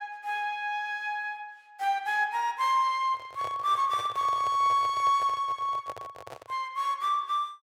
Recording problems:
handling noise; from 3 to 6.5 s; peak -10 dB vs average level

